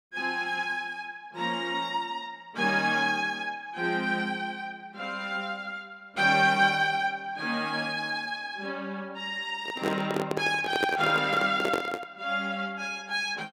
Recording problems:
microphone handling noise; from 9.5 to 12 s; peak +3 dB vs average level

